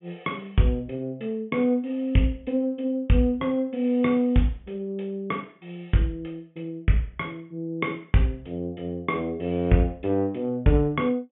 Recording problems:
treble missing; nothing above 3.5 kHz

